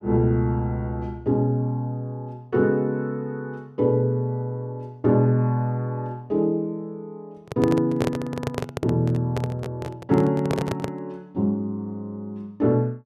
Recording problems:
microphone handling noise; from 7.5 to 11 s; peak +2 dB vs average level

